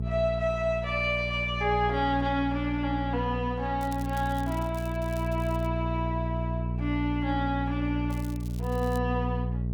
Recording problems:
hum; 60 Hz, harmonics up to 480 Hz, SNR 3 dB
crackling; from 4 to 5.5 s and at 8 s; loose cable, SNR 20 dB

